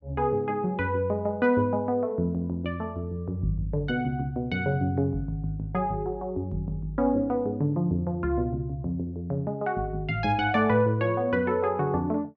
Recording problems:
none

